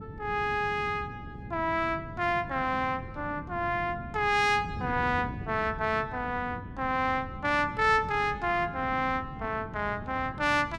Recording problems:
wind noise; below 230 Hz, SNR 12 dB

